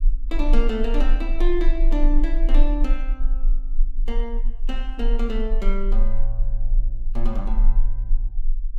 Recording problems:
low-frequency rumble; below 32 Hz, strongest tone 22 Hz, SNR -5 dB

